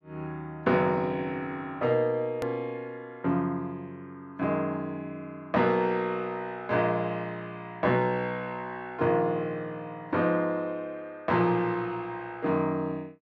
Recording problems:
edit click; at 2.5 s

